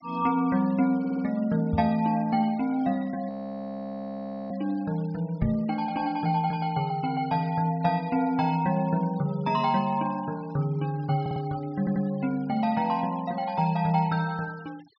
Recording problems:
low-pass filter; nothing above 5.5 kHz
noise reduction artefacts; signal-to-artefact ratio 25 dB
stutter; at 1 s, at 11 s and at 12 s
microphone bump; at 1.5 s and at 5.5 s; peak +2 dB vs average level
frozen audio; at 3.5 s for 1 s

